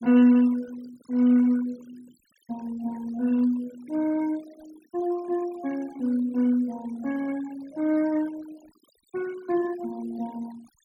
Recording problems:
noise reduction artefacts; signal-to-artefact ratio 23 dB

